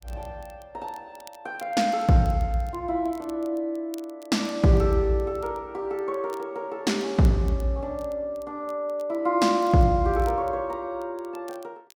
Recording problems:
crackling; vinyl, SNR 29 dB

